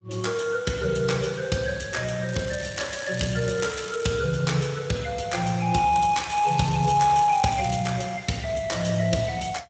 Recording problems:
codec artefacts; Speex, log-spectral distance 7 dB, nothing above 7.8 kHz
crackle; from 2.5 to 4 s and from 6 to 8 s; loose cable, SNR 15 dB

